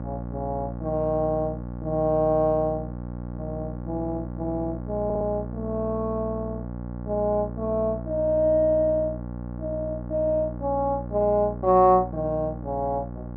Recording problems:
hum; 60 Hz, harmonics up to 1.1 kHz, SNR 9 dB
stutter; at 5 s

